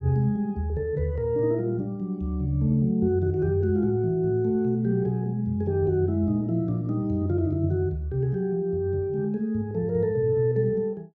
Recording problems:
none

